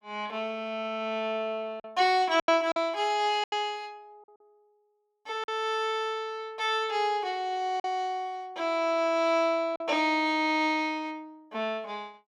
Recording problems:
packet loss; 3% of the sound replaced, filled with silence

